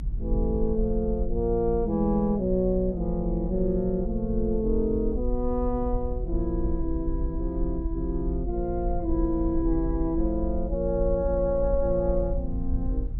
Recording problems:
rumble; below 56 Hz, SNR 5 dB

